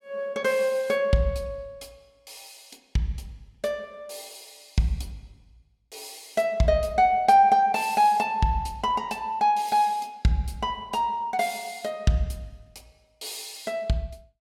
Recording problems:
none

